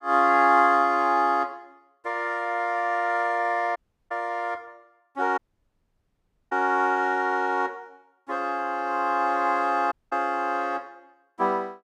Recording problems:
audio cutting out; at 4 s, at 5.5 s for 1 s and at 10 s

